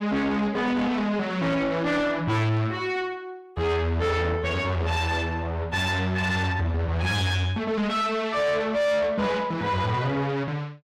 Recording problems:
distorted audio; soft clipping, signal-to-distortion ratio 7 dB

